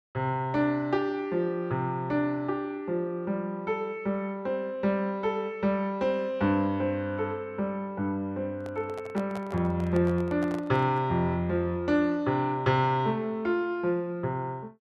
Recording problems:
microphone handling noise; from 8.5 to 11 s; peak -8 dB vs average level

